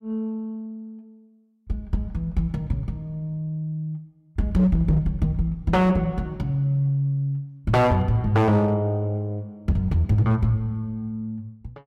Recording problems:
distorted audio; hard clipping, signal-to-distortion ratio 12 dB

